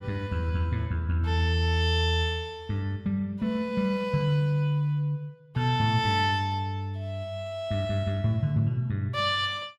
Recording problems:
none

